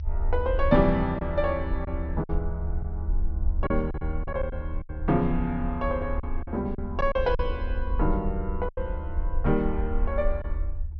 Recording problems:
treble missing; nothing above 6 kHz
low-frequency rumble; below 72 Hz, SNR 4 dB
packet loss; 6% of the sound replaced, filled with silence

